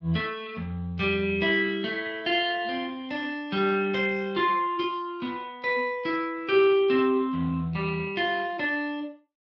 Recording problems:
lossy codec; Speex, log-spectral distance 3 dB

